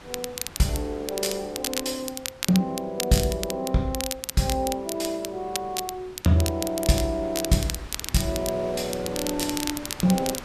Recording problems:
wind on the microphone; below 2 kHz, SNR 17 dB
crackle; vinyl, SNR 6 dB

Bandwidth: 14 kHz